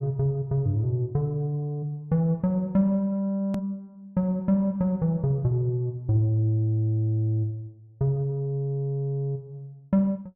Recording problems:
edit click; at 3.5 s

